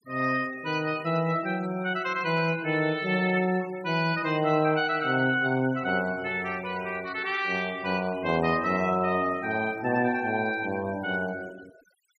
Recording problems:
denoising artefacts; signal-to-artefact ratio 20 dB

